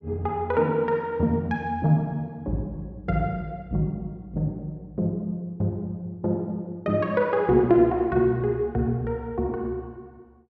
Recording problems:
none

